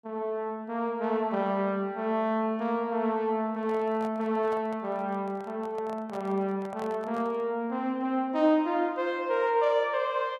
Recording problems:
microphone handling noise; from 3.5 to 7.5 s; peak -9 dB vs average level

